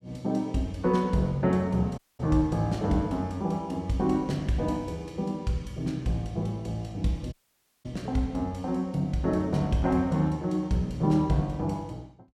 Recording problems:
audio cutting out; at 2 s and at 7.5 s for 0.5 s

